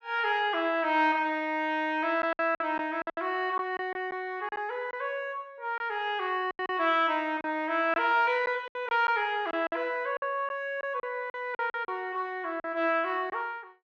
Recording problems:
lost packets; 8% of the sound replaced, filled with silence

